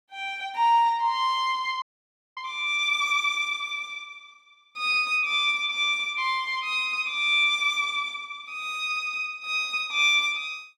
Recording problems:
frozen audio; at 2 s for 0.5 s

